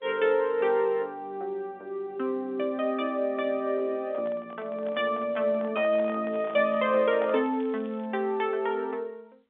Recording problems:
telephone audio; 240 Hz to 3.6 kHz, G.711
handling noise; from 4 to 7.5 s; peak -8 dB vs average level
crackle; from 6.5 to 8 s; loose cable, SNR 30 dB

